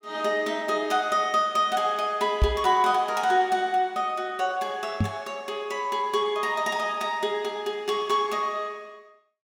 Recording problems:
microphone thump; at 2.5 s and at 5 s; peak +6 dB vs average level

